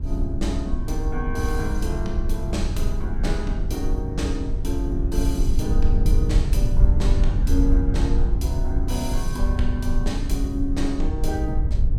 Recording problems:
low-frequency rumble; below 66 Hz, SNR -4 dB

